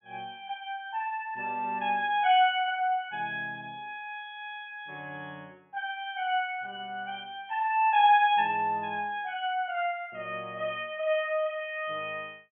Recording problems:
treble missing; nothing above 3.4 kHz

